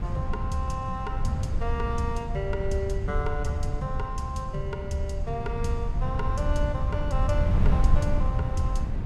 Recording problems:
wind noise; below 94 Hz, SNR -3 dB

